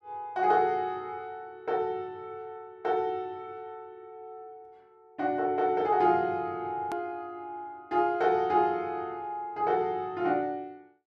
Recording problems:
click at an edit; at 7 s

